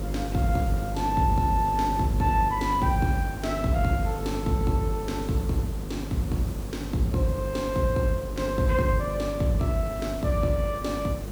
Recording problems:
hum; 50 Hz, harmonics up to 550 Hz, SNR 8 dB
hiss; slope -6 dB per octave, SNR 13 dB

